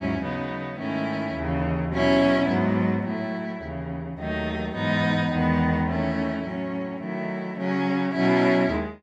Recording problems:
none

